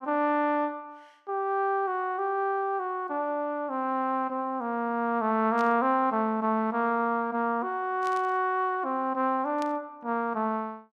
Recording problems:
static burst; at 5.5 s, at 8 s and at 9.5 s; peak -11 dB vs average level

